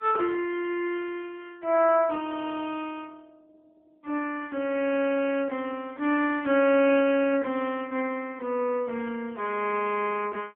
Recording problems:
telephone audio; 240 Hz to 3.3 kHz, AMR-NB

